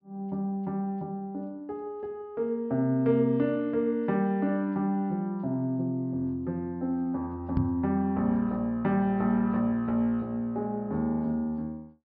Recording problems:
treble cut off; nothing above 5.5 kHz
knock on the microphone; at 7.5 s; peak +5 dB vs average level

